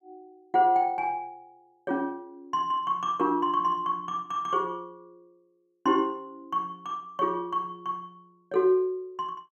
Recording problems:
none

